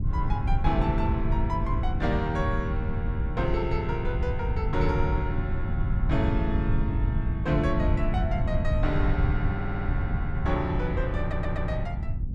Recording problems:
rumble; below 110 Hz, SNR -2 dB
stutter; at 9.5 s and at 11 s

